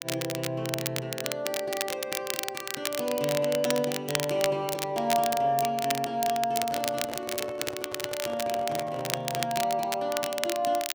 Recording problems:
crackling; vinyl, SNR 4 dB
microphone handling noise; from 6.5 to 9.5 s; peak -5 dB vs average level

